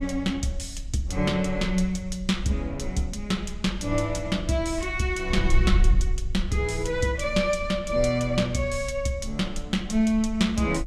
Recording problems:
wind on the microphone; below 56 Hz, SNR 7 dB

